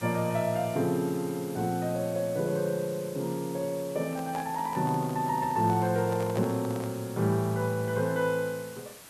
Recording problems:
background hiss; slope -2 dB per octave, SNR 17 dB
handling noise; from 4 to 7 s; peak -5 dB vs average level

